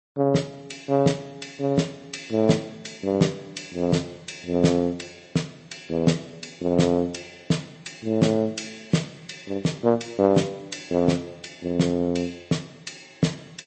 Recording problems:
lossy compression; MP3, log-spectral distance 5 dB, nothing above 8.2 kHz

